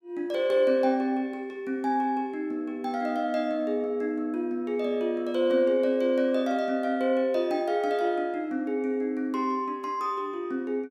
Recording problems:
none

